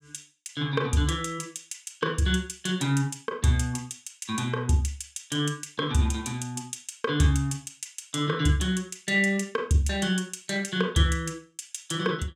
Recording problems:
none

